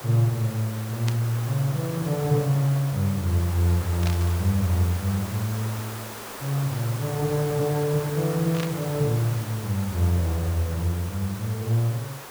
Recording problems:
background hiss; slope -4 dB per octave, SNR 11 dB
static burst; at 1 s, at 4 s and at 8.5 s; peak -4 dB vs average level

